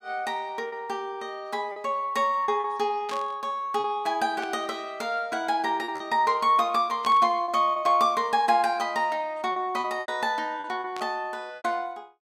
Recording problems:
lost packets; 6% of the sound replaced, filled with repeated pitch periods
static burst; 4 times, first at 3 s; peak -8 dB vs average level

